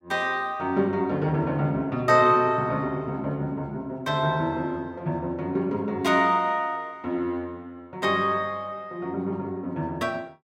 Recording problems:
none

